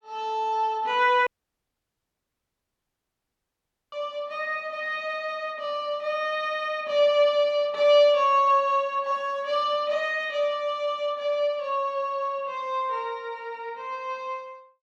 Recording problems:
audio cutting out; at 1.5 s for 2.5 s

